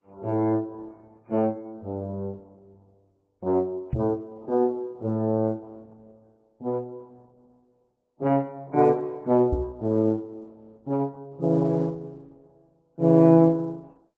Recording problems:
codec artefacts; MP3, then Opus, log-spectral distance 2 dB
microphone bump; at 4 s and at 9.5 s; peak +1 dB vs average level

